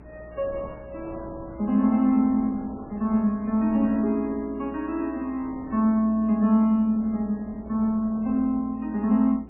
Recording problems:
lossy codec; MP3, log-spectral distance 2 dB, nothing above 2.5 kHz
electrical hum; 60 Hz, harmonics up to 420 Hz, SNR 23 dB
wind on the microphone; below 680 Hz, SNR 22 dB

